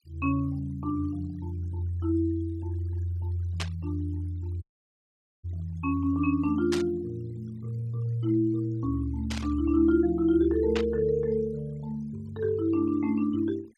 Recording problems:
noise reduction artefacts; signal-to-artefact ratio 26 dB
burst of static; 4 times, first at 3.5 s; peak -1 dB vs average level
audio cutting out; at 4.5 s for 1 s

